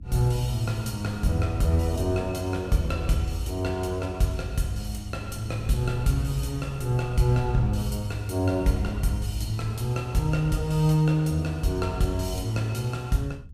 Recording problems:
rumble; below 100 Hz, SNR 14 dB

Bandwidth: 15 kHz